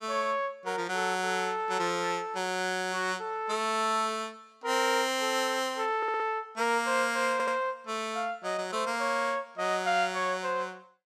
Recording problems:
audio stuttering; at 6 s and at 7.5 s

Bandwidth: 15 kHz